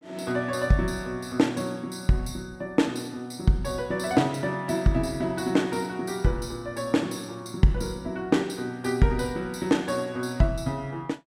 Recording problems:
none

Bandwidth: 16 kHz